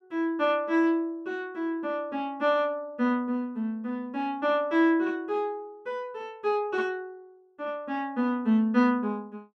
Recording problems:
none

